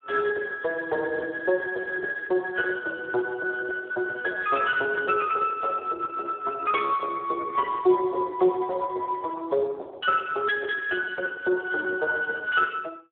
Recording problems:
telephone audio; 320 Hz to 2.6 kHz, Speex

